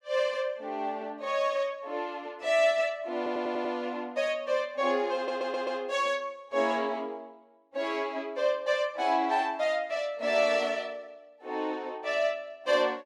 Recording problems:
stutter; at 3 s and at 5 s

